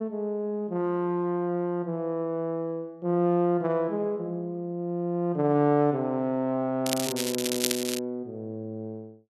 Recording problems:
crackle; from 7 to 8 s; loose cable, SNR 3 dB

